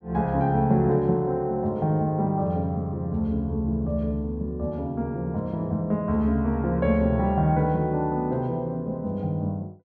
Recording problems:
none

